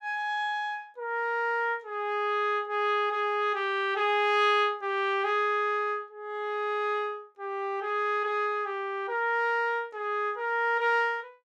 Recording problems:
none

